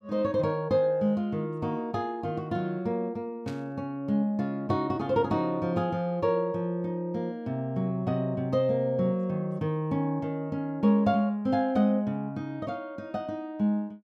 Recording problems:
static burst; at 3.5 s; peak -13 dB vs average level

